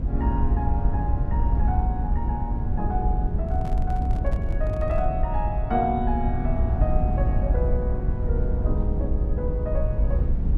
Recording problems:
low-frequency rumble; below 84 Hz, SNR -5 dB
microphone handling noise; from 3.5 to 5 s; peak -8 dB vs average level

